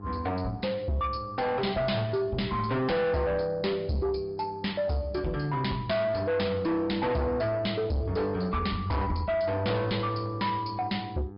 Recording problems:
low-pass filter; nothing above 5.2 kHz
lossy codec; Opus, log-spectral distance 2 dB
distortion; soft clipping, signal-to-distortion ratio 7 dB
hum; 50 Hz, harmonics up to 1.3 kHz, SNR 17 dB

